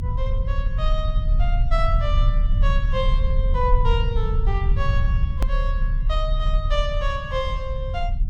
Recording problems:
rumble; below 60 Hz, strongest tone 34 Hz, SNR -6 dB
edit click; at 5.5 s

